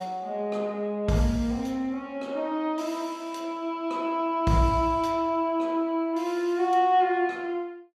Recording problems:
none

